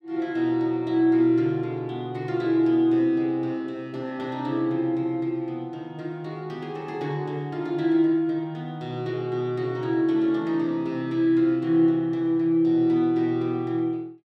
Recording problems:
none

